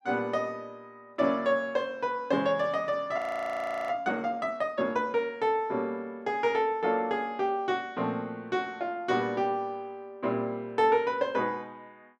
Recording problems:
audio freezing; at 3 s for 0.5 s

